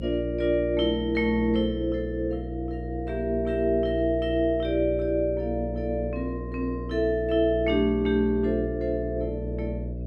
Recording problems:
hum; 60 Hz, harmonics up to 660 Hz, SNR 8 dB

